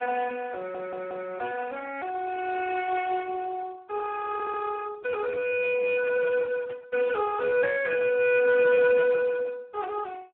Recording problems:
phone line; 280 Hz to 2.6 kHz, Speex
audio stuttering; at 0.5 s and at 4.5 s
burst of static; at 6.5 s; peak -16 dB vs average level

